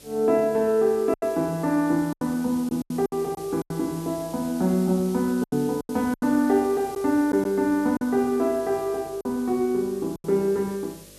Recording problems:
hum; 50 Hz, harmonics up to 600 Hz, SNR 27 dB
background hiss; slope +3 dB per octave, SNR 20 dB
lost packets; 8% of the sound replaced, filled with silence

